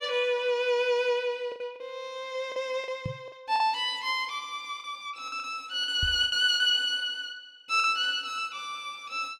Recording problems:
lost packets; 7% of the sound replaced, filled with the last packet
microphone bump; at 3 s and at 6 s; peak -2 dB vs average level

